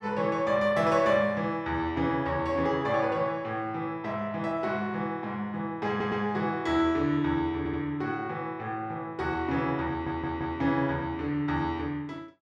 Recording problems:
stutter; at 6 s, at 7.5 s and at 10 s

